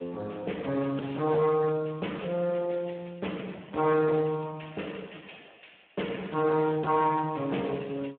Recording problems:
phone line; 220 Hz to 3.4 kHz, Speex
distortion; hard clipping, signal-to-distortion ratio 13 dB

